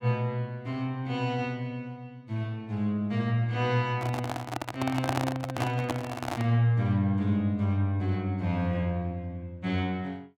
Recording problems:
microphone handling noise; from 4 to 6.5 s; peak +4 dB vs average level

